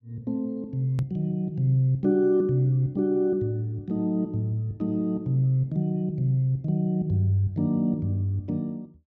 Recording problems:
edit click; at 1 s

